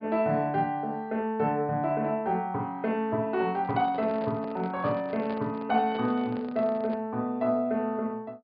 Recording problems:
low-pass filter; nothing above 5 kHz
microphone handling noise; from 3.5 to 7 s; peak -9 dB vs average level

